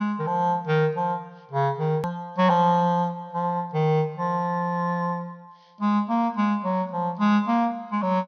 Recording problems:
treble missing; nothing above 6.3 kHz
click at an edit; at 2 s

